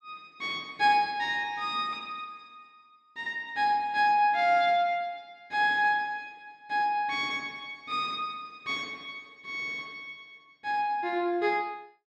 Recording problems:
none

